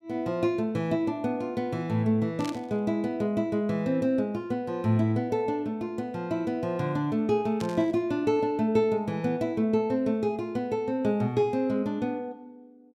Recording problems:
burst of static; at 2.5 s and at 7.5 s; peak -8 dB vs average level

